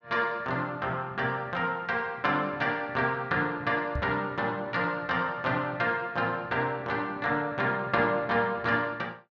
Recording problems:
microphone thump; at 4 s; peak 0 dB vs average level

